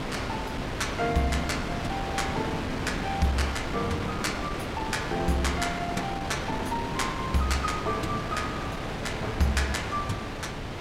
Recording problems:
wind noise; below 1.5 kHz, SNR 3 dB

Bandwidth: 16 kHz